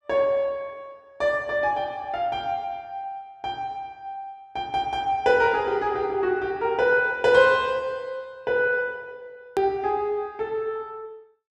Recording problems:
hard cut with a click; at 9.5 s

